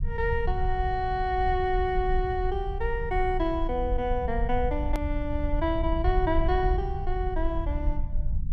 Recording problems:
low-frequency rumble; below 66 Hz, SNR 3 dB
edit click; at 5 s

